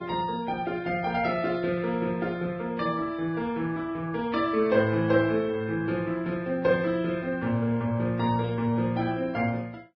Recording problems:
codec artefacts; Vorbis, log-spectral distance 2 dB

